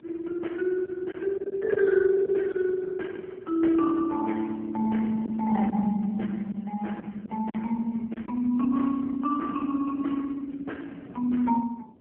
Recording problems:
telephone audio; 130 Hz to 2.8 kHz, AMR-NB
wind on the microphone; below 350 Hz, SNR 22 dB
packet loss; 3% of the sound replaced, filled with silence

